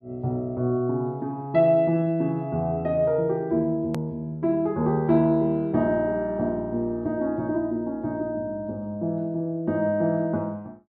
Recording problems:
low-pass filter; nothing above 5 kHz
hard cut with a click; at 4 s

